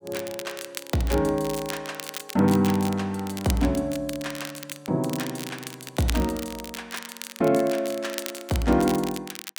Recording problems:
crackle; vinyl, SNR 11 dB

